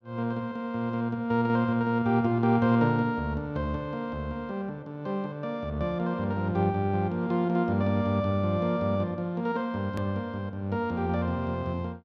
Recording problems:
hard cut with a click; at 10 s

